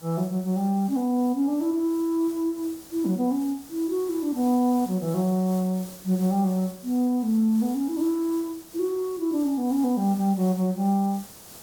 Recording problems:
background hiss; SNR 19 dB

